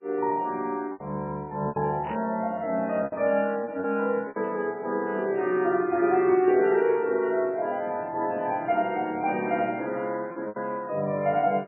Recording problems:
lossy compression; MP3, log-spectral distance 2 dB, nothing above 2.4 kHz
packet loss; 4% of the sound replaced, filled with repeated pitch periods
burst of static; at 2 s; peak -12 dB vs average level

